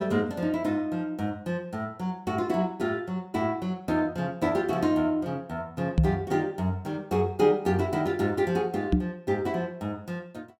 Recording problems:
knock on the microphone; at 6 s and at 9 s; peak +9 dB vs average level

